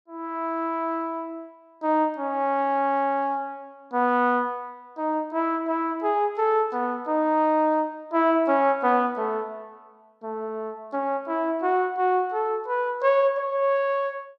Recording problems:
none

